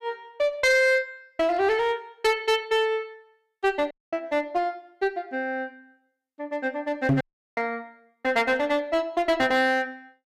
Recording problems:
distortion; hard clipping, uneven, signal-to-distortion ratio 10 dB
audio cutting out; at 4 s and at 7 s
microphone bump; at 7 s; peak +6 dB vs average level

